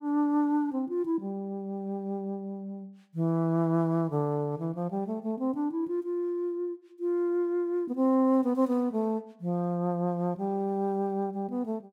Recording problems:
none

